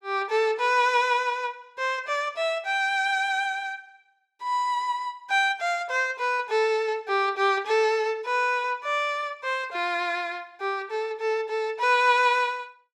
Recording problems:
none

